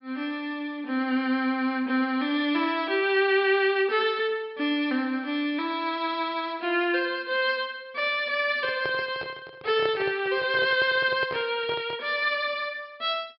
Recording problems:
treble cut off; nothing above 5.2 kHz
handling noise; from 8.5 to 12 s; peak -4 dB vs average level

